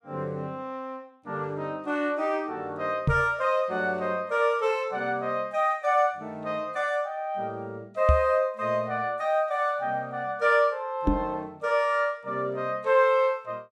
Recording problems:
knock on the microphone; at 3 s, at 8 s and at 11 s; peak +7 dB vs average level

